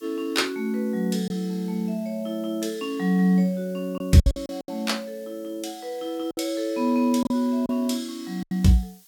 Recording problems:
hiss; SNR 27 dB
packet loss; 5% of the sound replaced, filled with silence

